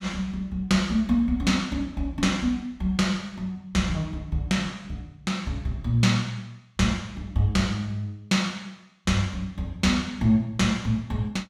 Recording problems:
none

